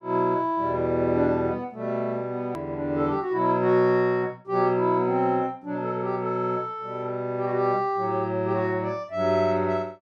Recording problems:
edit click; at 2.5 s

